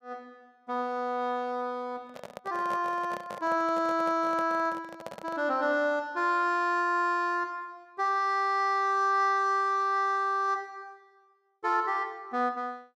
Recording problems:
microphone handling noise; from 2 to 5.5 s; peak -8 dB vs average level

